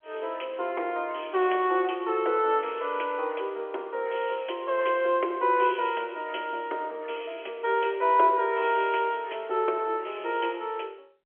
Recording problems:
telephone audio; 300 Hz to 3.4 kHz, G.711

